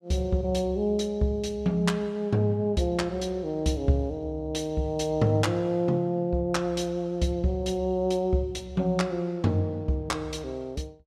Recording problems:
none

